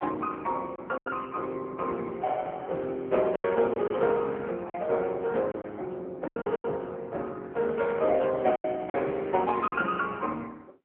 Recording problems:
phone line; 190 Hz to 3.3 kHz, AMR-NB
lost packets; 6% of the sound replaced, filled with silence

